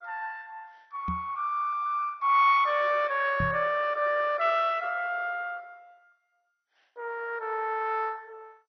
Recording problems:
codec artefacts; MP2, log-spectral distance 4 dB, nothing above 5.5 kHz
microphone thump; at 1 s and at 3.5 s; peak -1 dB vs average level

